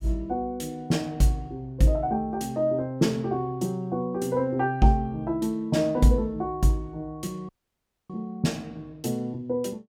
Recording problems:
dropout; at 7.5 s for 0.5 s

